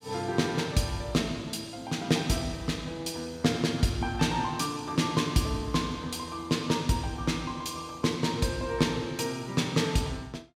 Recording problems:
none

